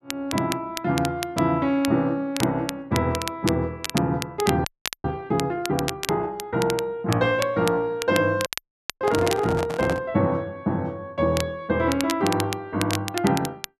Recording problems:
crackle; vinyl, SNR 9 dB
frozen audio; at 4.5 s and at 8.5 s for 0.5 s
microphone handling noise; from 8.5 to 10 s; peak 0 dB vs average level

